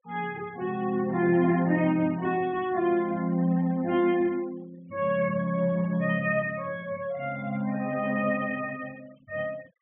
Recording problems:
treble missing; nothing above 3.4 kHz
denoising artefacts; signal-to-artefact ratio 24 dB

